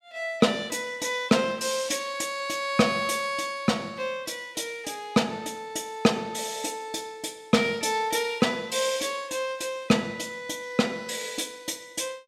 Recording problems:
none

